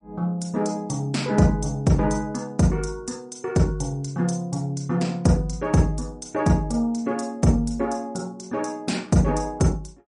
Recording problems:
codec artefacts; MP3, log-spectral distance 2 dB, nothing above 9.8 kHz

